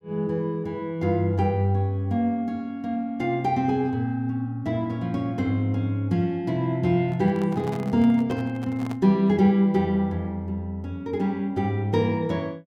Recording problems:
handling noise; from 7 to 9 s; peak -10 dB vs average level

